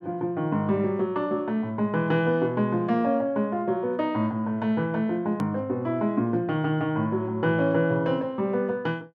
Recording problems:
click at an edit; at 5.5 s

